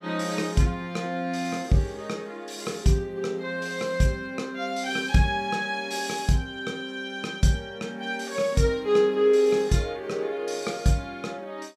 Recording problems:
none

